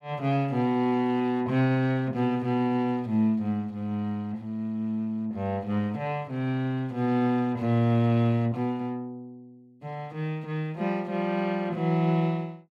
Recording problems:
none

